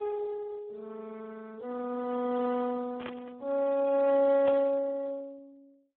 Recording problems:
phone line; 300 Hz to 2.5 kHz, Speex
static burst; at 3 s and at 4.5 s; peak -7 dB vs average level

